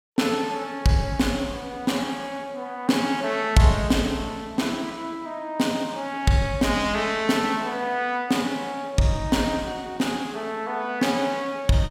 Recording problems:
none

